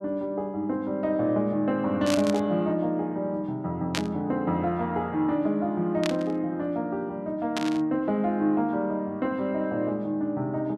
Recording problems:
static burst; 4 times, first at 2 s; peak +2 dB vs average level

